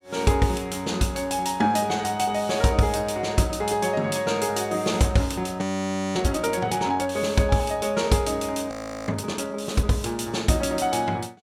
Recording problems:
frozen audio; at 5.5 s for 0.5 s and at 8.5 s

